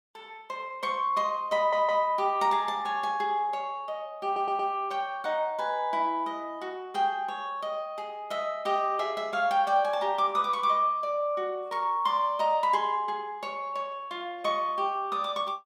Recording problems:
audio stuttering; at 1.5 s and at 4.5 s

